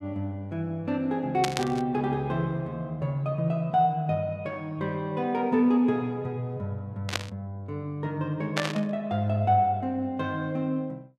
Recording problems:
burst of static; at 1.5 s, at 7 s and at 8.5 s; peak +4 dB vs average level

